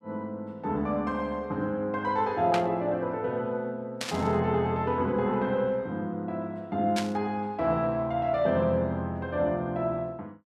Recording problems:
burst of static; at 2.5 s, at 4 s and at 7 s; peak +1 dB vs average level

